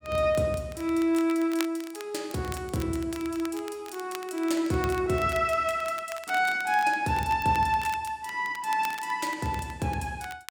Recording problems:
crackle; vinyl, SNR 17 dB

